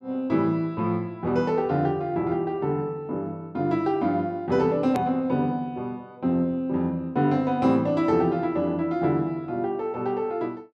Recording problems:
hard cut with a click; at 5 s

